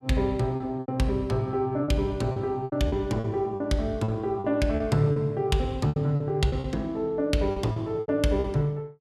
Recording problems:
lost packets; 11% of the sound replaced, filled with repeated pitch periods

